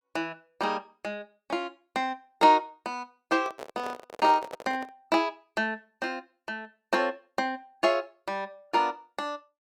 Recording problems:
microphone handling noise; from 3.5 to 5 s; peak -5 dB vs average level

